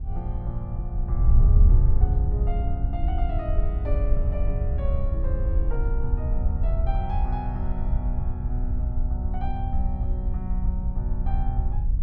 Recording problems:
wind noise; below 68 Hz, SNR -9 dB

